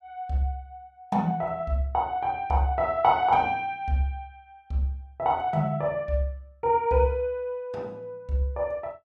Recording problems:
none

